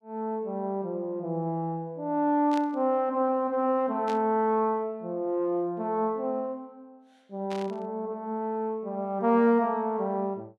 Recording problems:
burst of static; at 2.5 s, at 4 s and at 7.5 s; peak -9 dB vs average level

